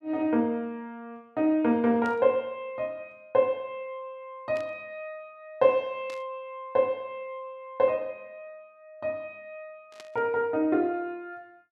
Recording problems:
burst of static; 4 times, first at 2 s; peak -14 dB vs average level

